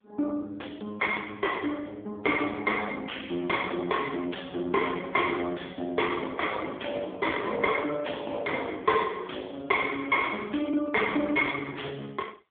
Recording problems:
phone line; 240 Hz to 3.4 kHz, AMR-NB
distortion; soft clipping, signal-to-distortion ratio 14 dB

